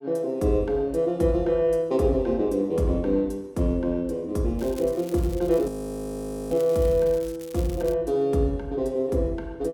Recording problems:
crackling; from 4.5 to 8 s; loose cable, SNR 22 dB
audio freezing; at 5.5 s for 1 s

